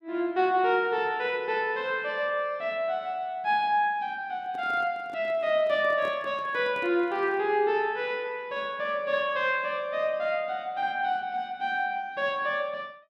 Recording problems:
handling noise; from 4.5 to 7.5 s; peak -11 dB vs average level

